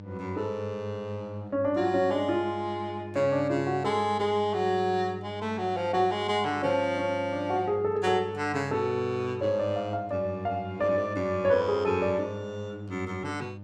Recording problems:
hum; 50 Hz, harmonics up to 900 Hz, SNR 14 dB

